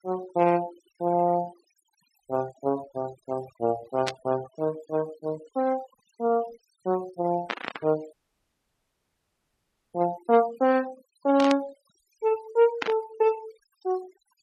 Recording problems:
denoising artefacts; signal-to-artefact ratio 19 dB
static burst; 4 times, first at 4 s; peak +2 dB vs average level
dropout; at 8 s for 2 s

